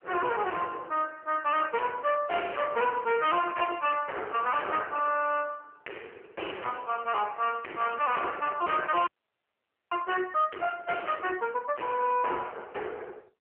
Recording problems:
telephone audio; 320 Hz to 3.2 kHz, AMR-NB
distorted audio; hard clipping, uneven, signal-to-distortion ratio 6 dB
frozen audio; at 9 s for 1 s

